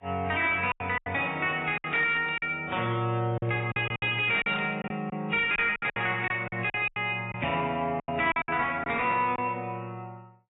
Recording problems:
codec artefacts; AAC, log-spectral distance 2 dB, nothing above 3.8 kHz
distortion; soft clipping, signal-to-distortion ratio 10 dB
lost packets; 11% of the sound replaced, filled with silence
static burst; at 2 s and at 4.5 s; peak -8 dB vs average level

